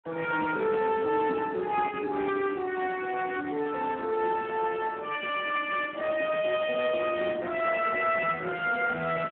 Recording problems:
telephone audio; 240 Hz to 3.3 kHz, Speex

